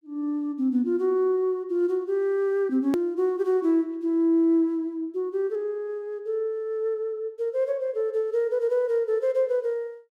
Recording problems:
edit click; at 3 s

